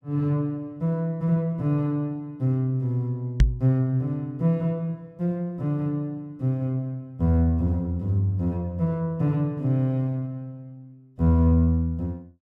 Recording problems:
microphone bump; at 3.5 s; peak +10 dB vs average level

